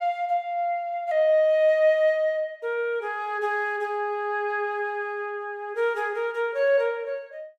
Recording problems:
none

